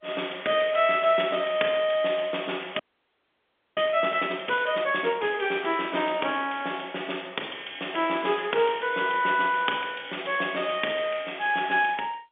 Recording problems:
phone line; 240 Hz to 3.5 kHz, G.711
frozen audio; at 3 s for 1 s

